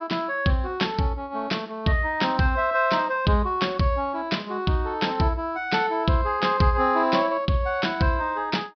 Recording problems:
treble cut off; nothing above 5.5 kHz

